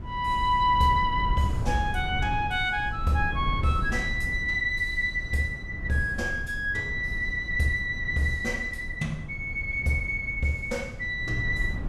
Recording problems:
wind on the microphone; below 120 Hz, SNR 8 dB

